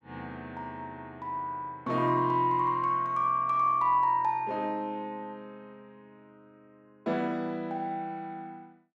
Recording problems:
none

